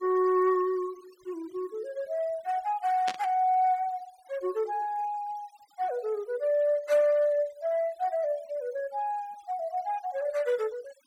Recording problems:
noise reduction artefacts; signal-to-artefact ratio 25 dB
burst of static; at 3 s; peak -1 dB vs average level

